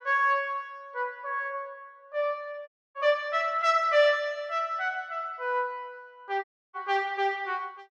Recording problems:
audio cutting out; at 2.5 s and at 6.5 s

